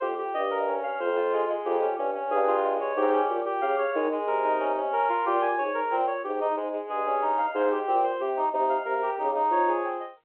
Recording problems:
telephone audio; 280 Hz to 3.3 kHz, G.711

